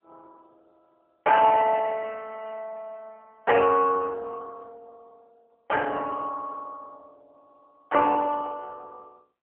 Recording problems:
telephone audio; 320 Hz to 3 kHz, AMR-NB

